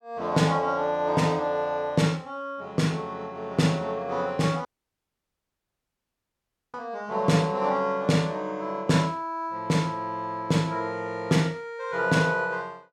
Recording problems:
audio cutting out; at 4.5 s for 2 s

